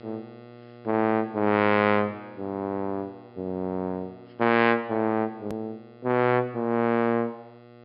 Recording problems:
treble cut off; nothing above 5.5 kHz
hum; 60 Hz, harmonics up to 2.8 kHz, SNR 23 dB
edit click; at 5.5 s

